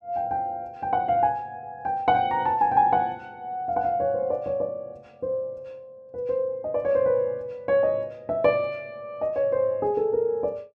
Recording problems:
none

